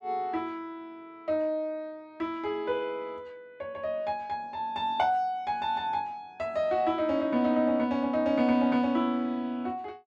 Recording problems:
none

